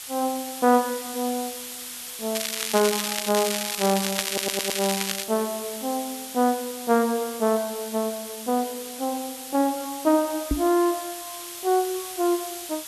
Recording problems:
hiss; slope +3 dB per octave, SNR 9 dB
crackling; from 2.5 to 5 s; loose cable, SNR 2 dB
audio stuttering; at 4.5 s
microphone bump; at 11 s; peak +5 dB vs average level

